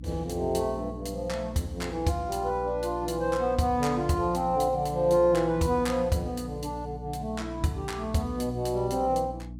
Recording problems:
hum; 60 Hz, harmonics up to 300 Hz, SNR 13 dB

